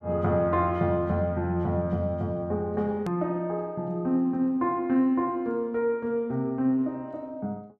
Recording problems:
click at an edit; at 3 s

